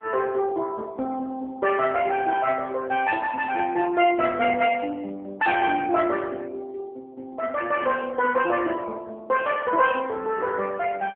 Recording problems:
telephone audio; 260 Hz to 3.5 kHz, AMR-NB

